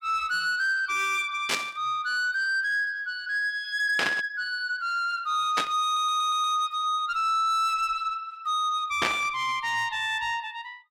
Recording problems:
distorted audio; soft clipping, signal-to-distortion ratio 12 dB
static burst; 4 times, first at 1.5 s; peak +3 dB vs average level
audio stuttering; at 6 s

